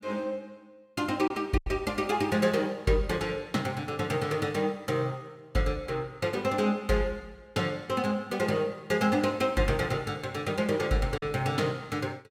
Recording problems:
packet loss; 1.2% of the sound replaced, filled with silence

